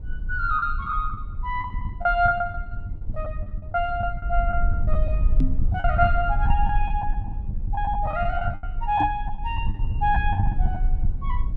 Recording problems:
low-frequency rumble; below 66 Hz, SNR 2 dB
packet loss; 14% of the sound replaced, filled with the last packet
microphone thump; at 5.5 s and at 9 s; peak +4 dB vs average level

